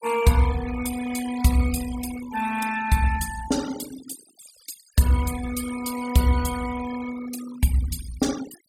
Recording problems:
denoising artefacts; signal-to-artefact ratio 12 dB

